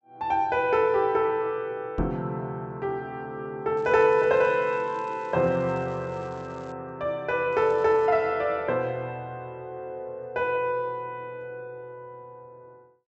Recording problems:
treble missing; nothing above 7.9 kHz
knock on the microphone; at 2 s; peak -1 dB vs average level
crackling; from 4 to 6.5 s and at 7.5 s; loose cable, SNR 30 dB

